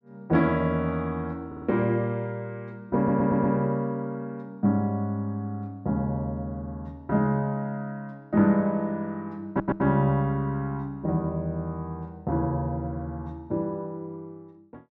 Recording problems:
stutter; at 1.5 s, at 3 s and at 9.5 s

